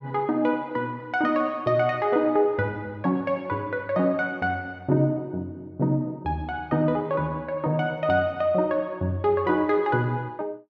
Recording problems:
none

